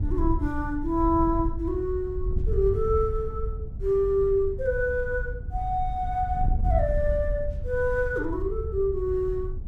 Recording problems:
wind noise; below 78 Hz, SNR 5 dB

